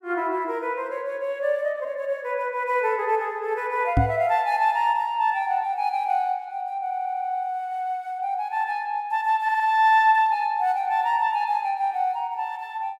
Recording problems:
microphone thump; at 4 s; peak +6 dB vs average level
stutter; at 7 s and at 9.5 s

